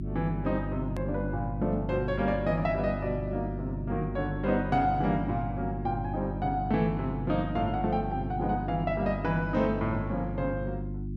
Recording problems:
mains hum; 50 Hz, harmonics up to 350 Hz, SNR 5 dB
edit click; at 1 s

